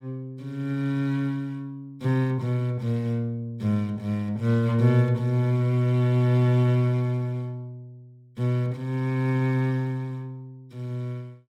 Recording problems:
none

